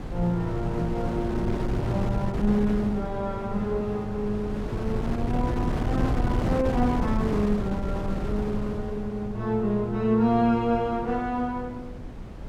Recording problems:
wind on the microphone; below 270 Hz, SNR 4 dB

